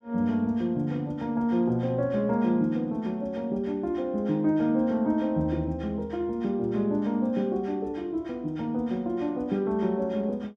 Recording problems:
none

